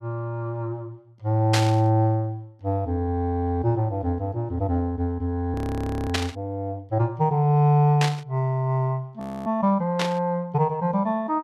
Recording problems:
static burst; 4 times, first at 1.5 s; peak +4 dB vs average level
audio freezing; at 5.5 s for 0.5 s and at 9 s

